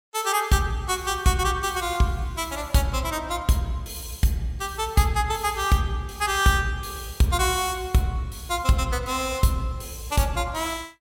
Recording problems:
none

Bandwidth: 16.5 kHz